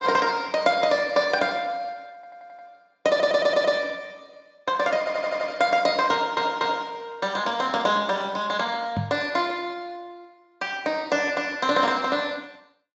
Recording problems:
lossy compression; Speex, log-spectral distance 3 dB
audio stuttering; 4 times, first at 2 s
microphone bump; at 9 s; peak 0 dB vs average level

